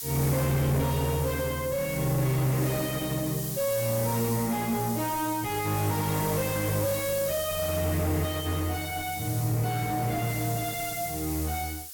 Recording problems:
distorted audio; soft clipping, signal-to-distortion ratio 5 dB
hiss; slope +5 dB per octave, SNR 7 dB

